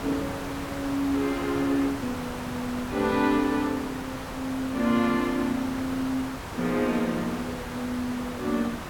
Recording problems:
background hiss; SNR 7 dB

